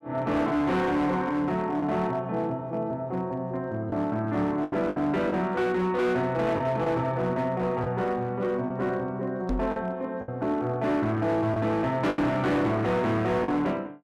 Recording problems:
distorted audio; hard clipping, signal-to-distortion ratio 10 dB
packet loss; 4% of the sound replaced, filled with the last packet
knock on the microphone; at 9.5 s; peak +1 dB vs average level

